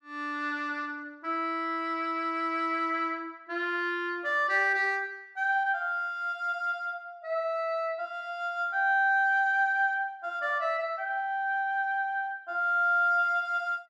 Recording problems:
none

